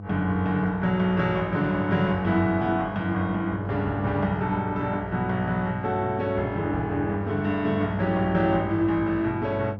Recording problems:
electrical hum; 50 Hz, harmonics up to 800 Hz, SNR 10 dB

